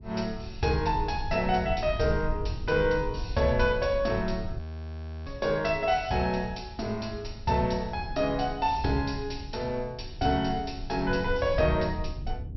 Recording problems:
treble missing; nothing above 5.8 kHz
rumble; below 90 Hz, SNR 10 dB
frozen audio; at 4.5 s for 0.5 s

